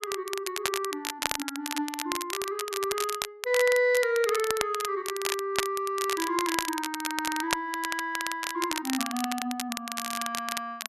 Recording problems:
crackling; vinyl, SNR 4 dB

